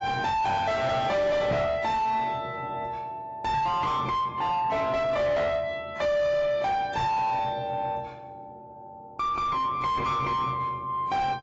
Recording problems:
codec artefacts; AAC, log-spectral distance 2 dB, nothing above 7.3 kHz
distorted audio; soft clipping, signal-to-distortion ratio 6 dB
knock on the microphone; at 1.5 s, at 3.5 s and at 7 s; peak +3 dB vs average level

